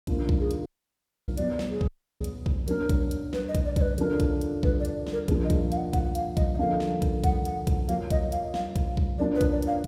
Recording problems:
audio cutting out; at 0.5 s for 0.5 s and at 2 s

